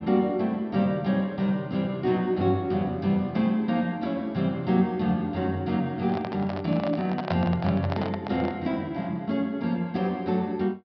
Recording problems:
treble cut off; nothing above 5.5 kHz
handling noise; from 6 to 8.5 s; peak +1 dB vs average level

